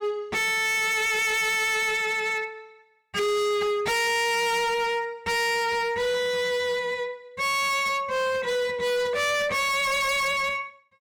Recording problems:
distorted audio; hard clipping, signal-to-distortion ratio 6 dB

